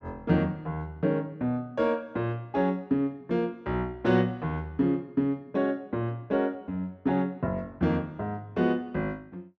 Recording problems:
none

